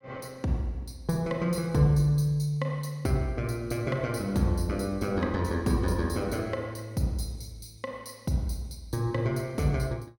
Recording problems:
none

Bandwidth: 17 kHz